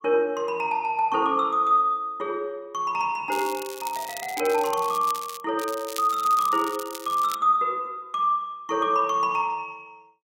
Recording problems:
crackling; from 3.5 to 5.5 s and from 5.5 to 7.5 s; loose cable, SNR 14 dB

